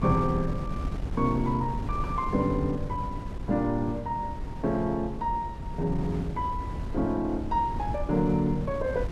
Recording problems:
wind noise; below 160 Hz, SNR 7 dB

